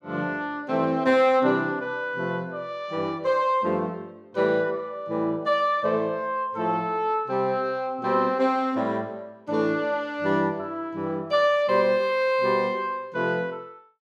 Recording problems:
none

